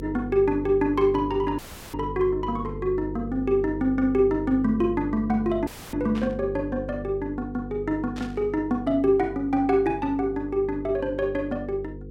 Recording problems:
hum; 50 Hz, harmonics up to 500 Hz, SNR 12 dB
dropout; at 1.5 s and at 5.5 s
burst of static; at 6 s and at 8 s; peak -11 dB vs average level

